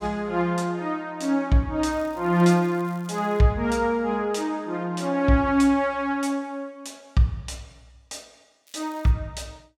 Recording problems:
crackle; from 2 to 3.5 s and at 8.5 s; loose cable, SNR 30 dB

